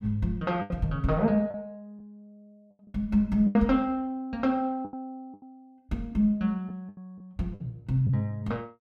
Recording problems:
packet loss; 7% of the sound replaced, filled with the last packet

